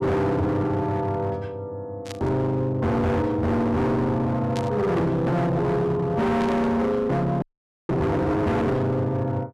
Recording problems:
distortion; hard clipping, signal-to-distortion ratio 7 dB
burst of static; at 2 s, at 4.5 s and at 6.5 s; peak -8 dB vs average level
audio freezing; at 7.5 s

